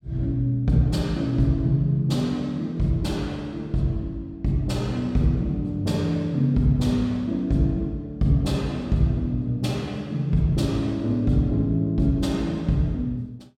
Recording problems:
none

